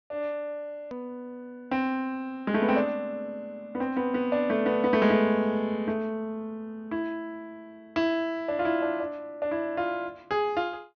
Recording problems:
treble cut off; nothing above 6.3 kHz
click at an edit; at 1 s

